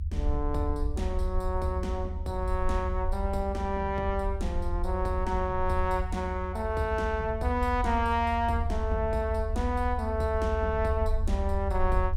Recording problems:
low-frequency rumble; below 78 Hz, SNR 3 dB

